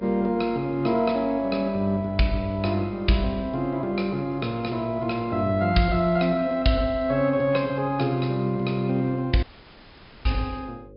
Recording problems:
treble cut off; nothing above 5.2 kHz
lossy codec; Vorbis, log-spectral distance 2 dB
electrical hum; 50 Hz, harmonics up to 550 Hz, SNR 22 dB
audio cutting out; at 9.5 s for 1 s

